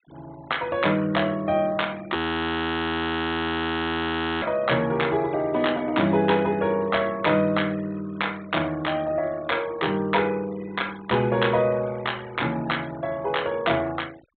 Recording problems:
treble missing; nothing above 4 kHz
noise reduction artefacts; signal-to-artefact ratio 23 dB
frozen audio; at 2 s for 2.5 s

